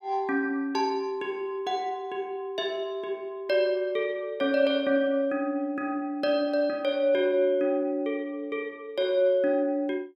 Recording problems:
none

